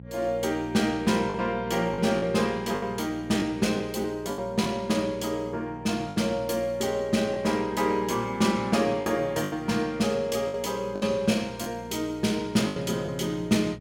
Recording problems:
hum; 60 Hz, harmonics up to 540 Hz, SNR 17 dB
packet loss; 6% of the sound replaced, filled with the last packet

